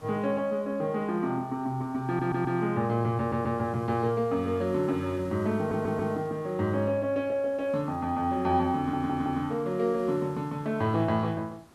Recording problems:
hiss; slope -5 dB per octave, SNR 24 dB
audio stuttering; 4 times, first at 2 s

